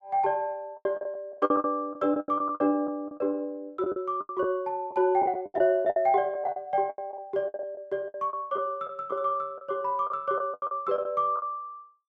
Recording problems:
packet loss; 14% of the sound replaced, filled with the last packet

